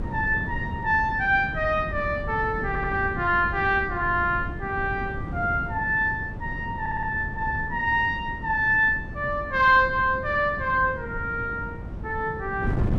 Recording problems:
wind on the microphone; below 210 Hz, SNR 11 dB
audio stuttering; at 2.5 s and at 7 s

